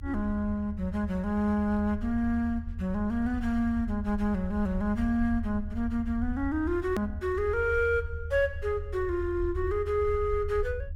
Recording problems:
low-frequency rumble; below 80 Hz, SNR 9 dB
hard cut with a click; at 7 s

